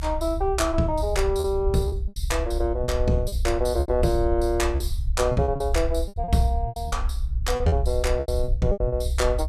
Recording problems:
low-frequency rumble; below 66 Hz, SNR 4 dB
lost packets; 11% of the sound replaced, filled with repeated pitch periods

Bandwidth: 14.5 kHz